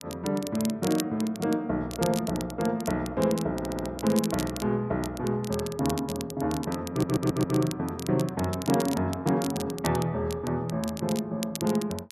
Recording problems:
crackling; vinyl, SNR 12 dB
stutter; at 3.5 s and at 7 s

